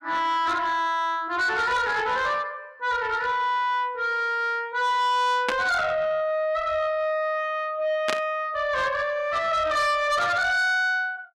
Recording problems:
distortion; soft clipping, signal-to-distortion ratio 10 dB
burst of static; at 5.5 s and at 8 s; peak +1 dB vs average level

